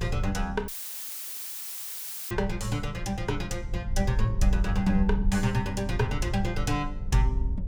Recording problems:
rumble; below 68 Hz, SNR 5 dB
dropout; at 0.5 s for 1.5 s; filled with static

